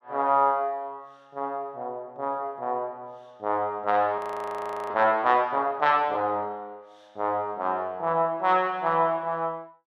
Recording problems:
audio freezing; at 4 s for 0.5 s

